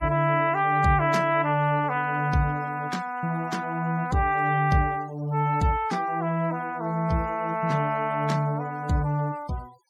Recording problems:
noise reduction artefacts; signal-to-artefact ratio 24 dB

